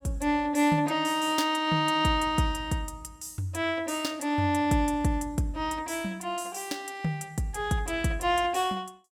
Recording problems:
none

